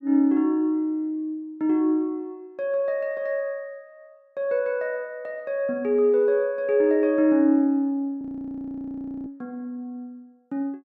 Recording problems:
audio freezing; at 8 s for 1 s

